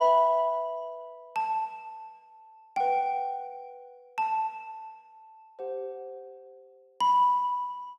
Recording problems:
none

